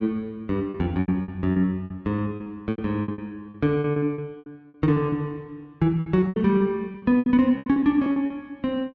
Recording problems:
packet loss; 17% of the sound replaced, filled with repeated pitch periods

